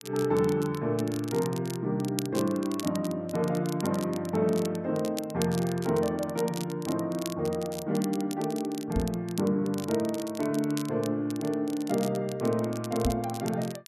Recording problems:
crackling; vinyl, SNR 14 dB
microphone bump; at 9 s and at 13 s; peak +3 dB vs average level

